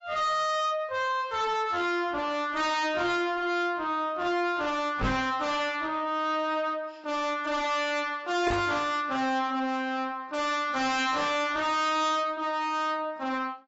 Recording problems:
codec artefacts; AAC, log-spectral distance 2 dB, nothing above 7.6 kHz
distortion; soft clipping, signal-to-distortion ratio 6 dB
microphone bump; at 5 s and at 8.5 s; peak +3 dB vs average level

